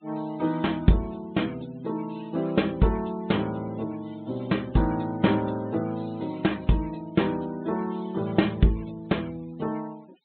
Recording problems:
treble missing; nothing above 4 kHz
denoising artefacts; signal-to-artefact ratio 25 dB

